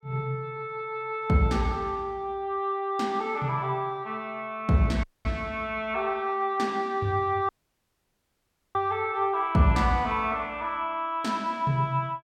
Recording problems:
audio cutting out; at 5 s and at 7.5 s for 1.5 s

